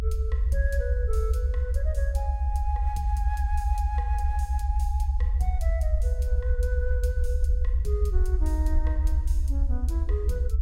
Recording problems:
low-frequency rumble; below 70 Hz, SNR -9 dB

